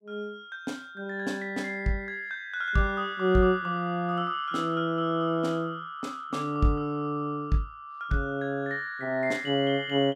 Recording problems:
none

